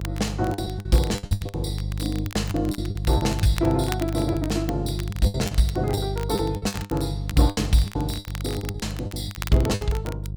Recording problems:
hum; 50 Hz, harmonics up to 350 Hz, SNR 5 dB
crackle; vinyl, SNR 15 dB
packet loss; 16% of the sound replaced, filled with the last packet

